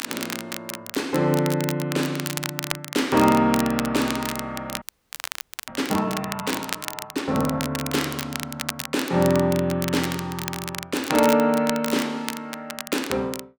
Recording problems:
crackling; vinyl, SNR 8 dB
audio freezing; at 5 s for 1 s

